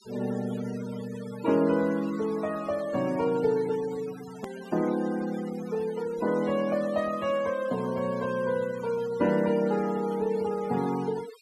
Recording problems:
noise reduction artefacts; signal-to-artefact ratio 18 dB
edit click; at 4.5 s

